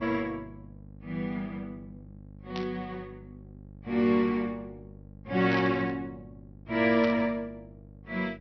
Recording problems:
treble cut off; nothing above 5.9 kHz
electrical hum; 50 Hz, harmonics up to 600 Hz, SNR 20 dB
static burst; at 2.5 s, at 5.5 s and at 7 s; peak -6 dB vs average level

